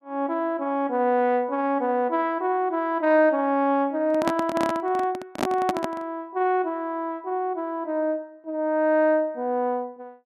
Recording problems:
handling noise; from 4 to 6 s; peak +3 dB vs average level

